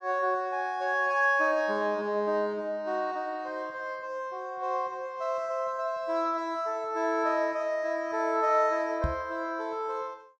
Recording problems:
microphone thump; at 9 s; peak +3 dB vs average level

